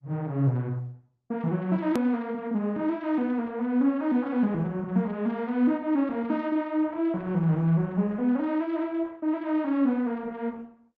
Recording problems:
lossy codec; Opus, log-spectral distance 2 dB, nothing above 13.1 kHz
edit click; at 2 s

